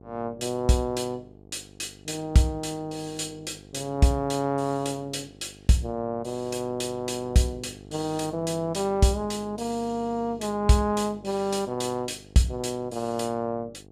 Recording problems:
electrical hum; 50 Hz, harmonics up to 850 Hz, SNR 20 dB

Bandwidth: 14.5 kHz